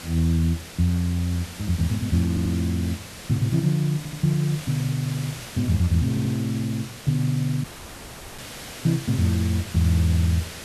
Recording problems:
background hiss; slope -2 dB per octave, SNR 13 dB
audio stuttering; at 2.5 s, at 4 s and at 6 s
dropout; at 7.5 s for 0.5 s

